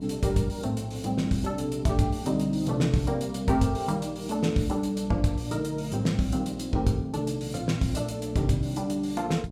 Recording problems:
hum; 60 Hz, harmonics up to 780 Hz, SNR 15 dB

